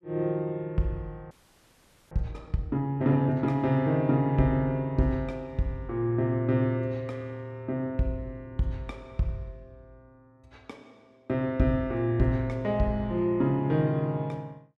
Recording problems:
audio freezing; at 1.5 s for 1 s

